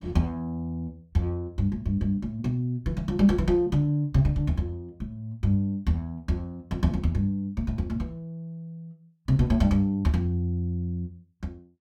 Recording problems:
none

